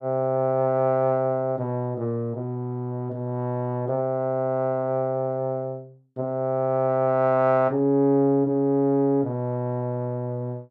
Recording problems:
none

